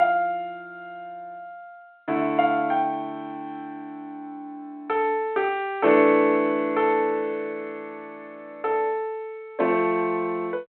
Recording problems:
phone line; 240 Hz to 3.6 kHz, G.726

